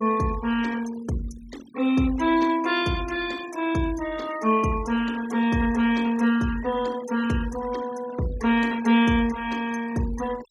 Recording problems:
denoising artefacts; signal-to-artefact ratio 18 dB

